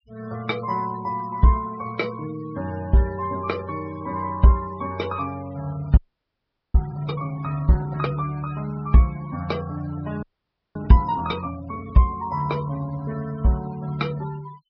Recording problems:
low-pass filter; nothing above 5.5 kHz
denoising artefacts; signal-to-artefact ratio 20 dB
frozen audio; at 6 s for 1 s and at 10 s for 0.5 s

